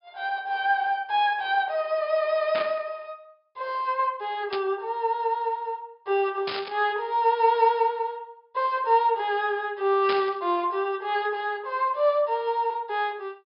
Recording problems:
treble cut off; nothing above 5.5 kHz
burst of static; 4 times, first at 2.5 s; peak -2 dB vs average level

